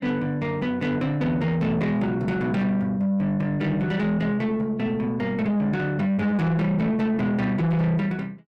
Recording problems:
distorted audio; soft clipping, signal-to-distortion ratio 11 dB

